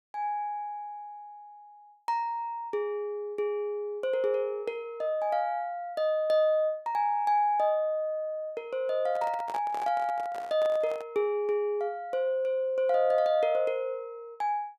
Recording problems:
microphone handling noise; from 9 to 11 s; peak -7 dB vs average level

